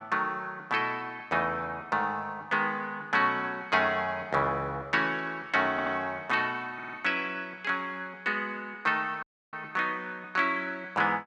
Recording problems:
stutter; at 5.5 s and at 7 s
dropout; at 9 s

